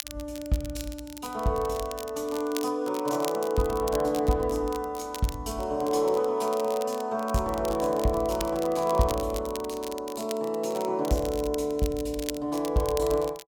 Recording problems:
crackling; vinyl, SNR 14 dB

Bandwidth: 17 kHz